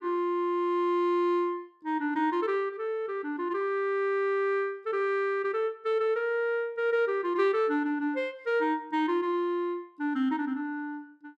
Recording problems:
none

